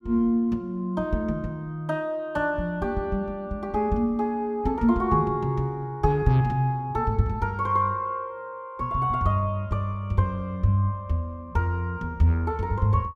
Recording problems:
none

